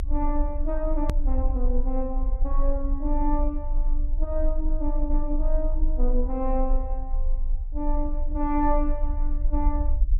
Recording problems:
rumble; below 38 Hz, strongest tone 24 Hz, SNR -2 dB
edit click; at 1 s

